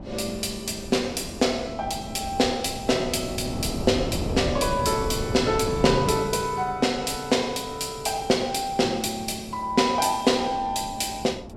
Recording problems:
wind on the microphone; below 420 Hz, SNR 10 dB

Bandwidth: 16 kHz